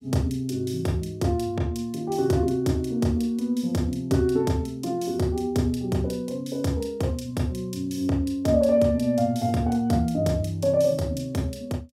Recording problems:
none

